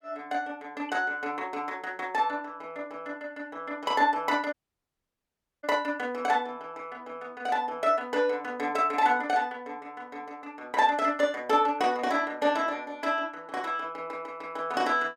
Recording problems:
audio cutting out; at 4.5 s for 1 s

